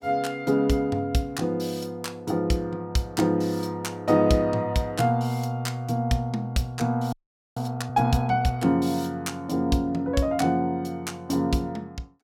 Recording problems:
audio freezing; at 7 s

